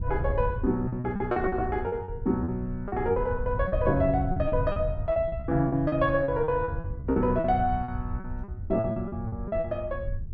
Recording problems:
wind on the microphone; below 100 Hz, SNR 7 dB
packet loss; 14% of the sound replaced, filled with repeated pitch periods

